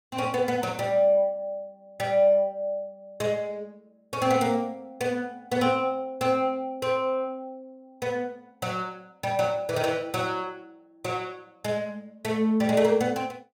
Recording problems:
none

